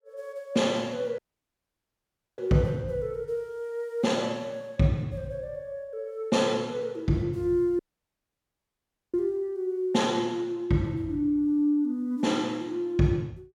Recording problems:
audio cutting out; at 1 s for 1 s and at 8 s for 1.5 s

